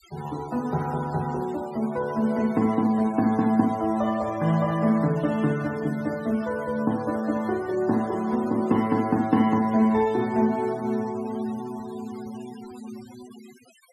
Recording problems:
denoising artefacts; signal-to-artefact ratio 21 dB

